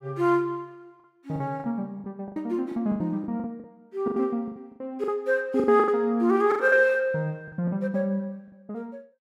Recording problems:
lost packets; 13% of the sound replaced, filled with the last packet

